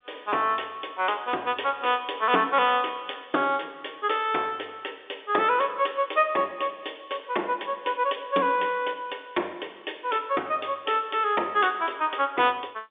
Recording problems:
telephone audio; 300 Hz to 3.6 kHz, G.711

